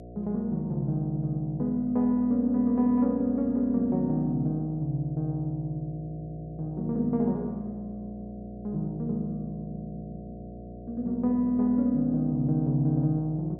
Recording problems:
hum; 60 Hz, harmonics up to 720 Hz, SNR 16 dB

